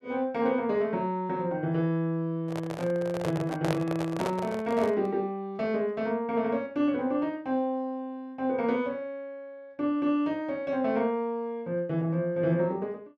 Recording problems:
microphone handling noise; from 2.5 to 5 s; peak +1 dB vs average level

